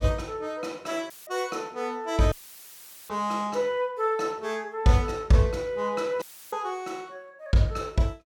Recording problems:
audio cutting out; at 1 s, at 2.5 s for 1 s and at 6 s; filled with static

